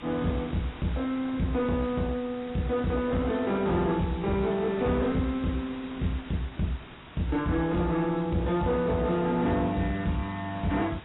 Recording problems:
lossy codec; AAC, log-spectral distance 7 dB, nothing above 3.8 kHz
distorted audio; soft clipping, signal-to-distortion ratio 9 dB
hiss; SNR 16 dB

